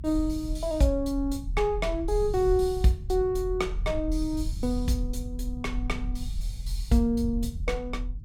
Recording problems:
rumble; below 60 Hz, strongest tone 40 Hz, SNR 6 dB

